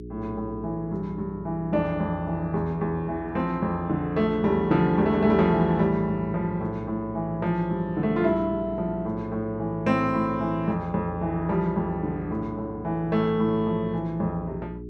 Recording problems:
mains hum; 60 Hz, harmonics up to 420 Hz, SNR 14 dB

